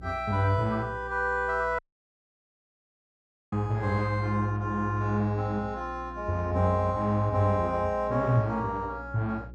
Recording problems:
hum; 60 Hz, harmonics up to 540 Hz, SNR 17 dB
dropout; at 2 s for 1.5 s

